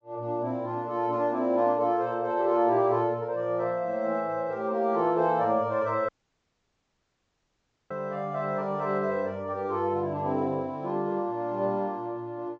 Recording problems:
low-pass filter; nothing above 8 kHz
dropout; at 6 s for 2 s

